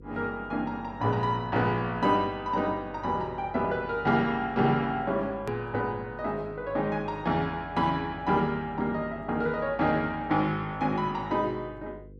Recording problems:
hum; 50 Hz, harmonics up to 500 Hz, SNR 20 dB
hard cut with a click; at 5.5 s

